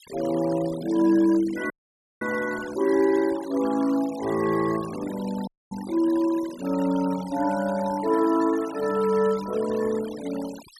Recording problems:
denoising artefacts; signal-to-artefact ratio 17 dB
audio cutting out; at 1.5 s for 0.5 s and at 5.5 s

